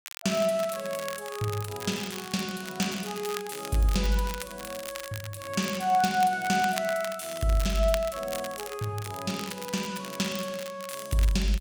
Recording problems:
crackling; vinyl, SNR 11 dB

